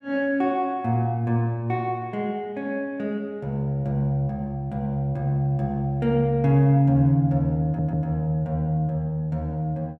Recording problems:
stutter; at 7.5 s

